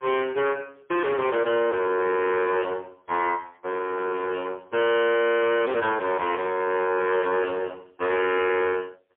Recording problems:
phone line; 340 Hz to 3.3 kHz, AMR-NB, then MP3
distortion; hard clipping, uneven, signal-to-distortion ratio 8 dB

